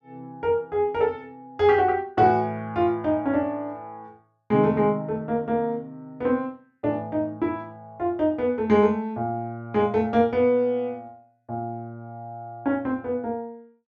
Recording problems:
none

